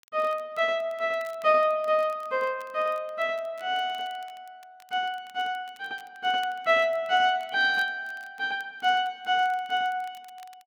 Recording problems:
crackle; vinyl, SNR 30 dB

